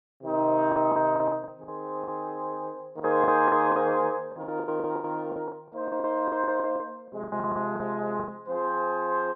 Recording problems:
packet loss; 15% of the sound replaced, filled with the last packet

